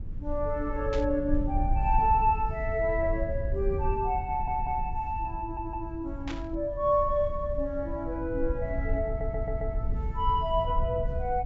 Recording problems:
low-pass filter; nothing above 8 kHz
rumble; below 74 Hz, SNR 5 dB
burst of static; at 1 s and at 6.5 s; peak -6 dB vs average level
audio stuttering; at 4.5 s, at 5.5 s and at 9 s

